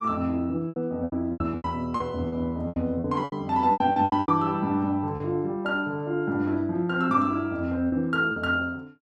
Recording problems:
lost packets; 11% of the sound replaced, filled with repeated pitch periods

